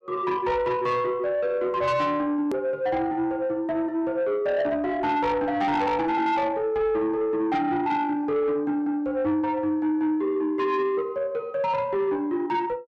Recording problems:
distortion; soft clipping, signal-to-distortion ratio 11 dB
click at an edit; at 2.5 s

